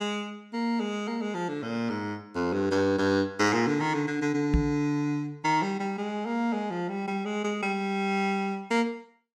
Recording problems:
knock on the microphone; at 4.5 s; peak +7 dB vs average level

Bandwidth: 15.5 kHz